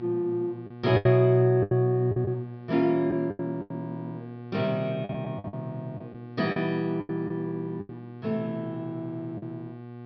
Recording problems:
treble missing; nothing above 5.5 kHz
hum; 60 Hz, harmonics up to 1.6 kHz, SNR 14 dB
packet loss; 10% of the sound replaced, filled with the last packet

